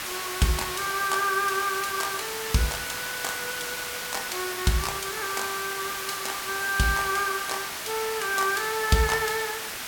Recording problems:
background hiss; slope 0 dB per octave, SNR 4 dB

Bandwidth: 17 kHz